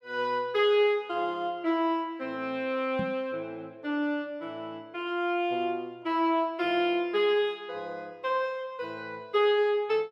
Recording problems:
microphone thump; at 3 s; peak -1 dB vs average level

